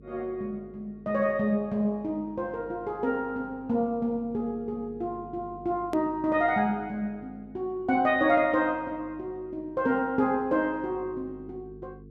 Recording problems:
hum; 50 Hz, harmonics up to 450 Hz, SNR 22 dB
edit click; at 6 s

